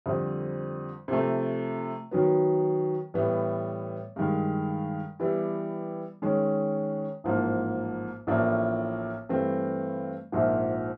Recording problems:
none

